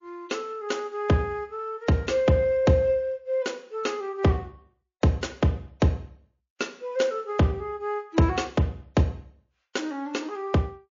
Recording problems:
lossy compression; MP3, log-spectral distance 2 dB, nothing above 6.9 kHz

